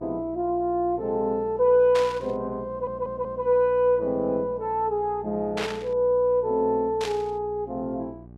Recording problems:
hum; 60 Hz, harmonics up to 840 Hz, SNR 21 dB
static burst; at 2 s, at 5.5 s and at 7 s; peak -3 dB vs average level
stutter; at 2.5 s

